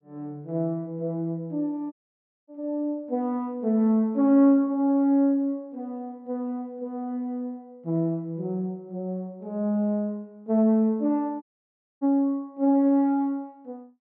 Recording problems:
audio cutting out; at 2 s for 0.5 s and at 11 s for 0.5 s

